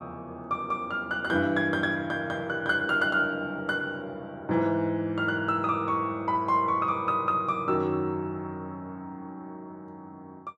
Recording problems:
none

